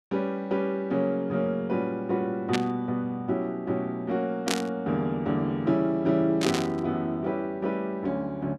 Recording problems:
static burst; at 2.5 s, at 4.5 s and at 6.5 s; peak +5 dB vs average level

